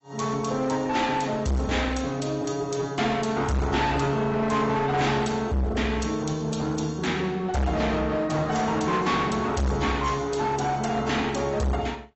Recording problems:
lossy codec; AAC, log-spectral distance 4 dB, nothing above 7.8 kHz
distortion; hard clipping, uneven, signal-to-distortion ratio 5 dB

